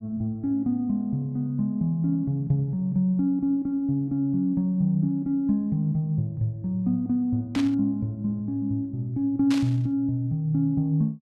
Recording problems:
static burst; at 7.5 s and at 9.5 s; peak -5 dB vs average level

